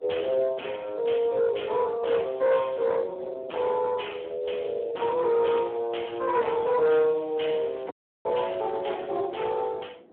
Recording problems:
telephone audio; 240 Hz to 3.4 kHz, Speex
distorted audio; soft clipping, signal-to-distortion ratio 10 dB
wind on the microphone; below 880 Hz, SNR 22 dB
crackling; from 6 to 9 s; loose cable, SNR 27 dB
audio cutting out; at 8 s

